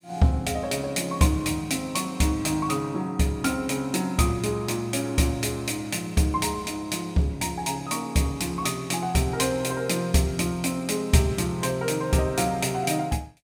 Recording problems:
none

